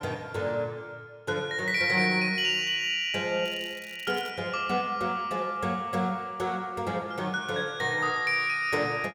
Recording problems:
crackle; at 3.5 s; loose cable, SNR 23 dB

